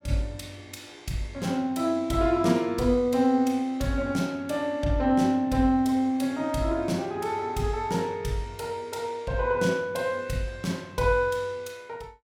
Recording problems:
none

